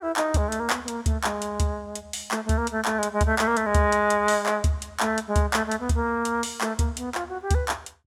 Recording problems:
none

